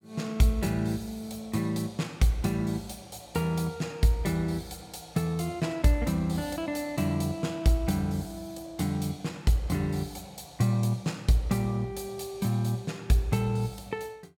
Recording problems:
none

